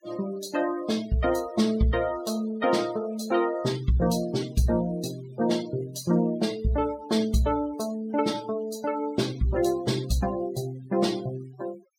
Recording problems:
noise reduction artefacts; signal-to-artefact ratio 19 dB

